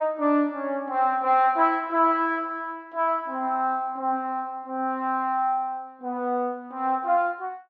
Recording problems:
none

